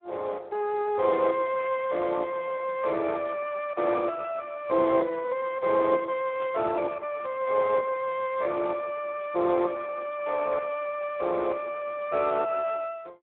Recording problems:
telephone audio; 300 Hz to 3.1 kHz, Speex
static burst; at 1.5 s and at 6.5 s; peak -15 dB vs average level

